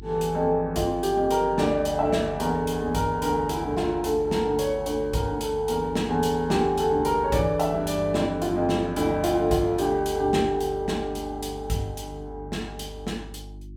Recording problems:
mains hum; 50 Hz, harmonics up to 350 Hz, SNR 17 dB

